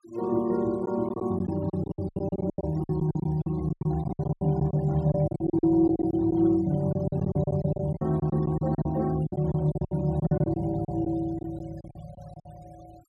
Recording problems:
denoising artefacts; signal-to-artefact ratio 26 dB
packet loss; 17% of the sound replaced, filled with silence

